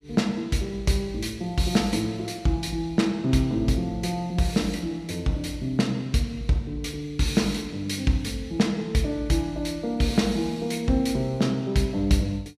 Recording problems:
none

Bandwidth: 15 kHz